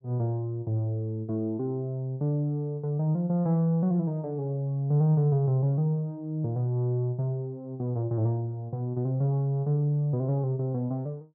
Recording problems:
none

